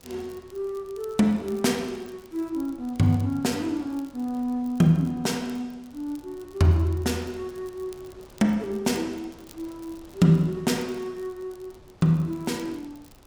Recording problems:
wind noise; below 820 Hz, SNR 27 dB
crackling; vinyl, SNR 28 dB

